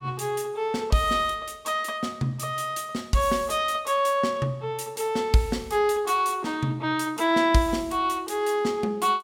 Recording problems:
none

